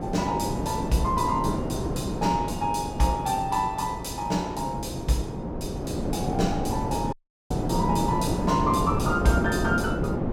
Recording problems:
hum; 60 Hz, harmonics up to 360 Hz, SNR 19 dB
wind noise; below 440 Hz, SNR 2 dB
audio cutting out; at 7 s

